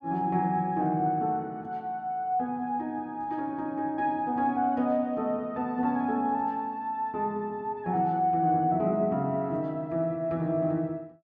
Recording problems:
none

